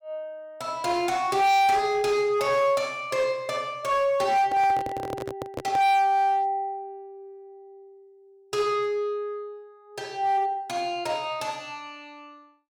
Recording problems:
distorted audio; hard clipping, uneven, signal-to-distortion ratio 7 dB
handling noise; from 4.5 to 6 s; peak -4 dB vs average level

